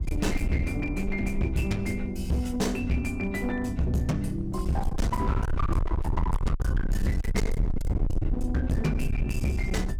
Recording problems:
distorted audio; hard clipping, uneven, signal-to-distortion ratio 7 dB
wind noise; below 90 Hz, SNR 2 dB

